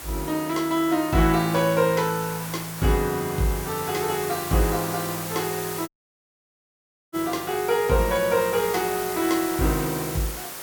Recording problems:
hiss; slope -2 dB per octave, SNR 9 dB
dropout; at 6 s for 1 s

